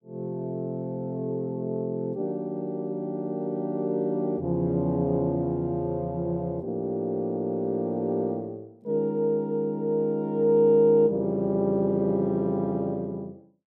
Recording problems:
none

